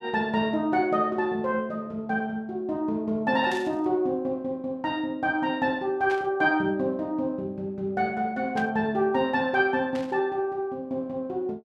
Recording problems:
burst of static; 4 times, first at 3.5 s; peak -8 dB vs average level

